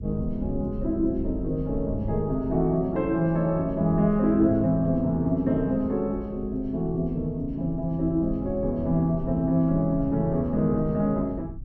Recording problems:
low-frequency rumble; below 100 Hz, SNR 13 dB

